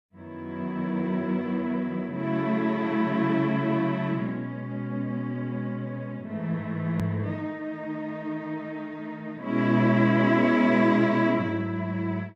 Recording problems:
click at an edit; at 7 s

